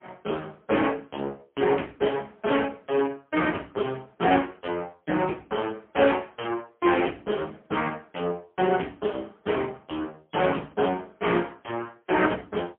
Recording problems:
phone line; 240 Hz to 3.3 kHz, AMR-NB, then MP3

